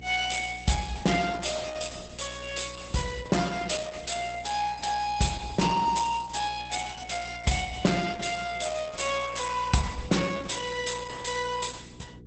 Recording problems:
lossy codec; Opus, log-spectral distance 7 dB, nothing above 8.2 kHz
hum; 60 Hz, harmonics up to 480 Hz, SNR 18 dB

